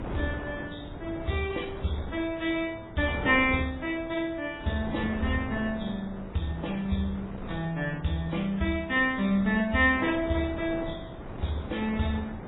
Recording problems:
lossy codec; MP3, then AAC, log-spectral distance 4 dB, nothing above 3.8 kHz
wind noise; below 560 Hz, SNR 11 dB

